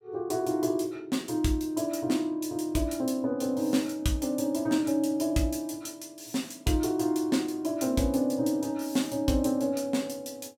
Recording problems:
none

